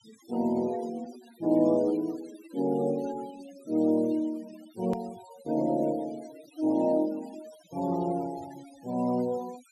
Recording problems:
noise reduction artefacts; signal-to-artefact ratio 20 dB
click at an edit; at 5 s

